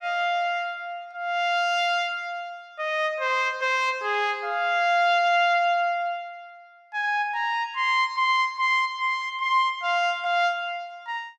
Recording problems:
none

